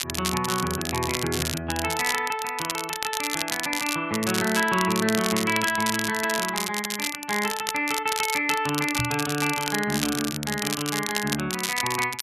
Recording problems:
crackling; vinyl, SNR 3 dB
microphone bump; at 9 s; peak 0 dB vs average level

